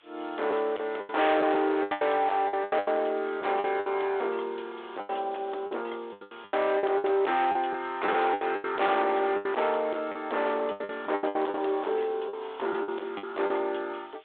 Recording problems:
phone line; 320 Hz to 3.7 kHz, G.726
distorted audio; hard clipping, signal-to-distortion ratio 8 dB
hiss; SNR 28 dB
lost packets; 14% of the sound replaced, filled with the last packet

